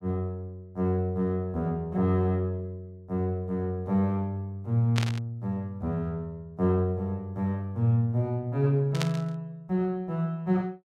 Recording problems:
burst of static; at 5 s and at 9 s; peak +2 dB vs average level

